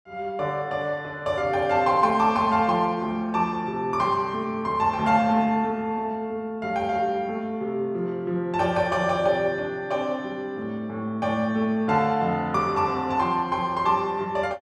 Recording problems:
none

